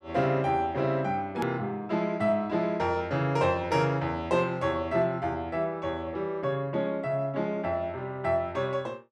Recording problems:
edit click; at 1.5 s

